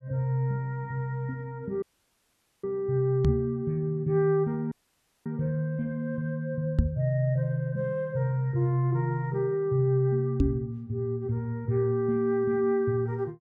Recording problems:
audio cutting out; at 2 s for 1 s and at 4.5 s for 0.5 s
knock on the microphone; at 3.5 s, at 7 s and at 10 s; peak +8 dB vs average level

